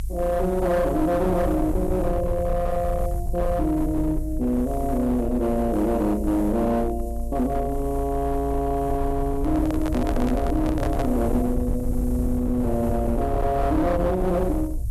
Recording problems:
distortion; hard clipping, signal-to-distortion ratio 11 dB
hiss; SNR 25 dB
low-frequency rumble; below 78 Hz, SNR 6 dB
microphone handling noise; from 9.5 to 11 s; peak -2 dB vs average level

